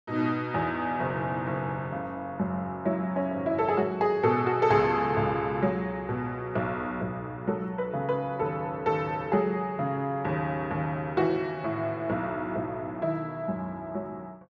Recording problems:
none

